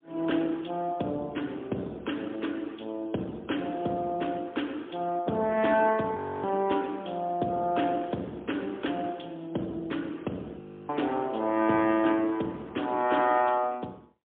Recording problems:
telephone audio; 130 Hz to 3.5 kHz, AMR-NB, then MP3
audio freezing; at 6 s and at 11 s

